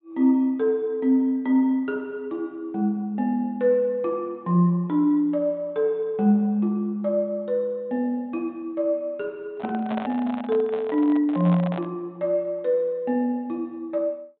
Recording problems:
treble missing; nothing above 4 kHz
microphone handling noise; from 9.5 to 12 s; peak -4 dB vs average level

